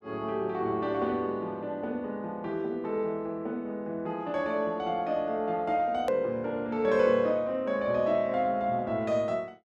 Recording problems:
hard cut with a click; at 6 s

